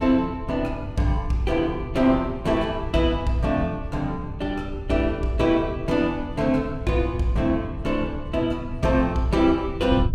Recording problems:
wind on the microphone; below 110 Hz, SNR 11 dB

